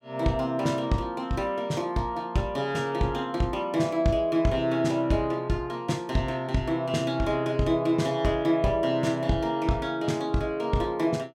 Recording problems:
none

